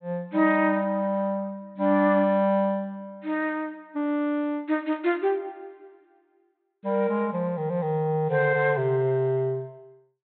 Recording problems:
low-pass filter; nothing above 4 kHz

